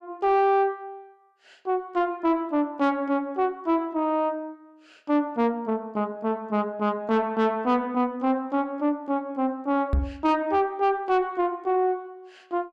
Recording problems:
distorted audio; soft clipping, signal-to-distortion ratio 10 dB
microphone bump; at 10 s; peak +4 dB vs average level

